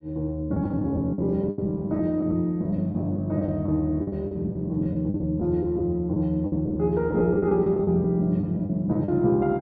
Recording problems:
lost packets; 12% of the sound replaced, filled with the last packet

